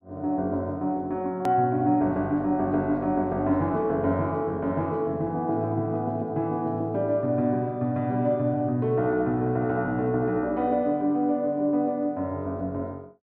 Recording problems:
hard cut with a click; at 1.5 s

